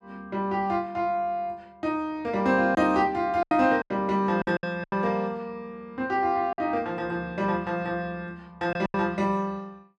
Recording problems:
lost packets; 5% of the sound replaced, filled with silence

